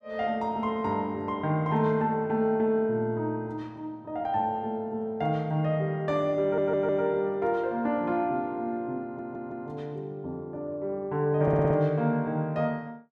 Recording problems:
stutter; at 6.5 s, at 9 s and at 11 s

